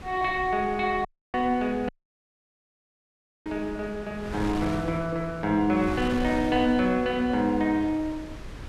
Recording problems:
wind on the microphone; below 580 Hz, SNR 13 dB
audio cutting out; at 1 s and at 2 s for 1.5 s

